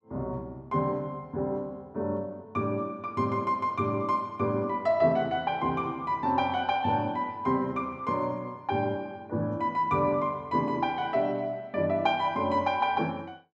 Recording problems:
none

